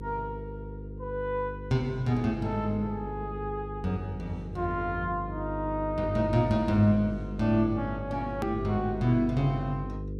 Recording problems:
hum; 50 Hz, harmonics up to 500 Hz, SNR 9 dB
click at an edit; at 8.5 s

